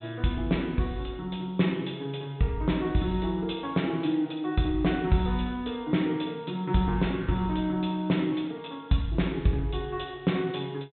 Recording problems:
low-pass filter; nothing above 3.9 kHz

